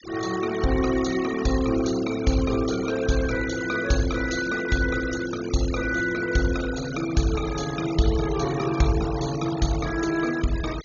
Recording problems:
low-pass filter; nothing above 7 kHz
noise reduction artefacts; signal-to-artefact ratio 13 dB

